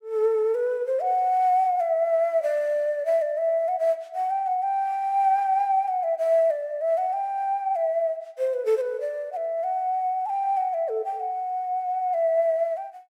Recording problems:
none

